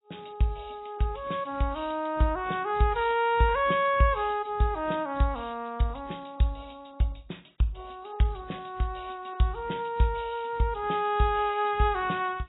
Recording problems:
lossy compression; AAC, log-spectral distance 6 dB, nothing above 3.8 kHz

